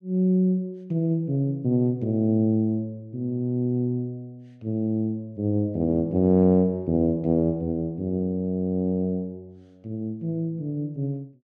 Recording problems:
none

